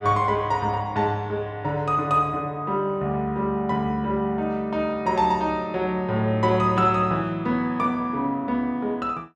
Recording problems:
none

